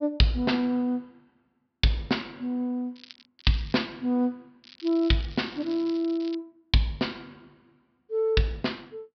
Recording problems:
treble cut off; nothing above 5.5 kHz
crackle; at 3 s, at 3.5 s and from 4.5 to 6.5 s; loose cable, SNR 20 dB

